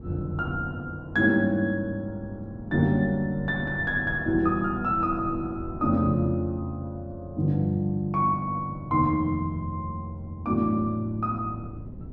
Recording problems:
wind on the microphone; below 210 Hz, SNR 16 dB

